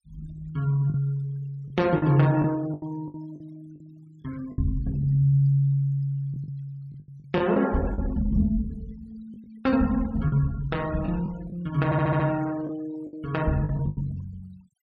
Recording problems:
noise reduction artefacts; signal-to-artefact ratio 24 dB
lost packets; 7% of the sound replaced, filled with the last packet
stutter; at 12 s

